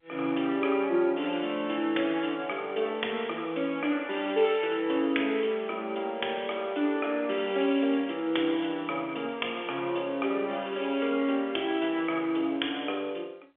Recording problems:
telephone audio; 280 Hz to 3.4 kHz, G.711

